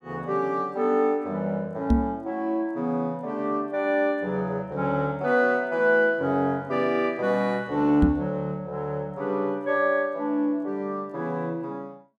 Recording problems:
microphone bump; at 2 s and at 8 s; peak +8 dB vs average level

